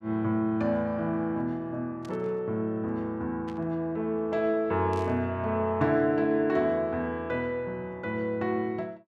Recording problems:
burst of static; at 2 s, at 3.5 s and at 5 s; peak -15 dB vs average level

